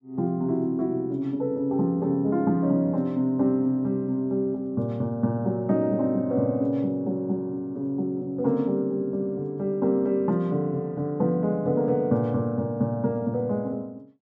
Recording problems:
none

